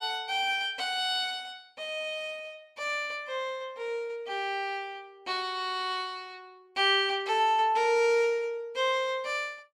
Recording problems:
none

